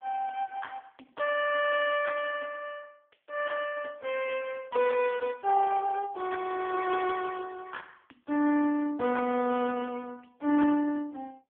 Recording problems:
telephone audio; 170 Hz to 3.2 kHz, AMR-NB

